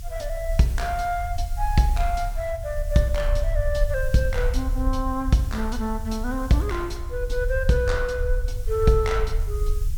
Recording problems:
background hiss; slope +3 dB per octave, SNR 22 dB
rumble; below 58 Hz, strongest tone 34 Hz, SNR 4 dB

